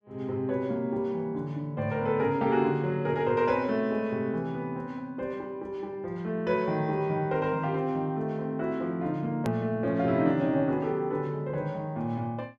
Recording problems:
edit click; at 9.5 s

